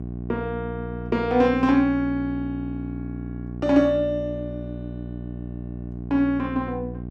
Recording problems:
hum; 60 Hz, harmonics up to 780 Hz, SNR 10 dB

